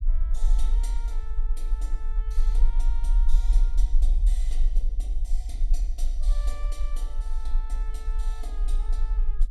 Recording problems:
rumble; below 40 Hz, strongest tone 20 Hz, SNR -19 dB

